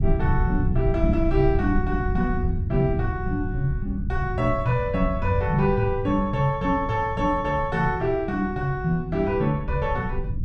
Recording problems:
low-frequency rumble; below 110 Hz, SNR 6 dB

